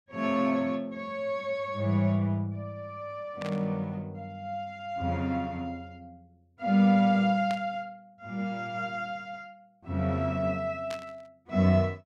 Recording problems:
static burst; at 3.5 s, at 7.5 s and at 11 s; peak -7 dB vs average level

